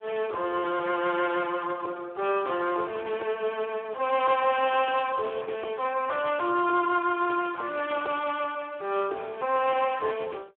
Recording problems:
telephone audio; 370 Hz to 3.3 kHz, Speex

